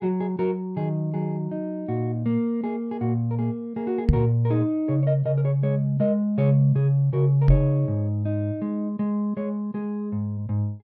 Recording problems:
microphone bump; at 4 s and at 7.5 s; peak +9 dB vs average level

